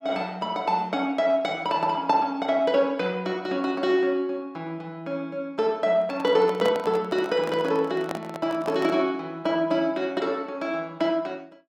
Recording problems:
microphone handling noise; from 6 to 9 s; peak -1 dB vs average level

